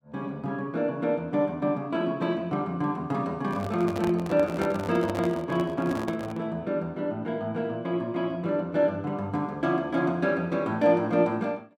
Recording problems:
microphone handling noise; from 3.5 to 6.5 s; peak -2 dB vs average level

